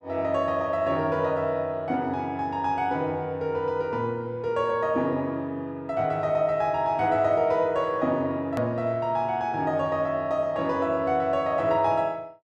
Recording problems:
edit click; at 8.5 s

